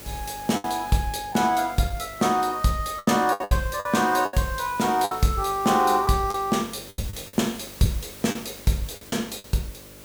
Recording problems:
hum; 50 Hz, harmonics up to 600 Hz, SNR 24 dB
hiss; slope -1 dB per octave, SNR 18 dB
lost packets; 8% of the sound replaced, filled with the last packet

